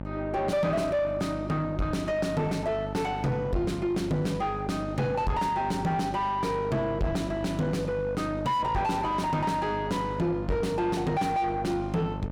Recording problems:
distorted audio; soft clipping, signal-to-distortion ratio 5 dB
hum; 50 Hz, harmonics up to 1.3 kHz, SNR 9 dB

